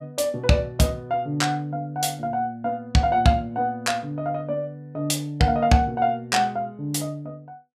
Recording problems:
none

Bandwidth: 15 kHz